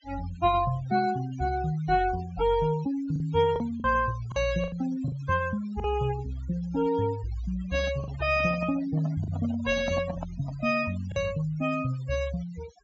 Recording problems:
treble cut off; nothing above 8 kHz
noise reduction artefacts; signal-to-artefact ratio 16 dB
lost packets; 3% of the sound replaced, filled with the last packet
handling noise; from 7.5 to 11 s; peak -3 dB vs average level

